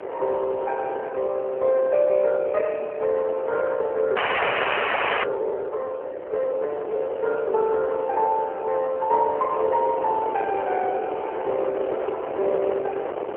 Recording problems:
phone line; 340 Hz to 3.2 kHz, AMR-NB
wind on the microphone; below 750 Hz, SNR 9 dB
frozen audio; at 4 s for 1 s

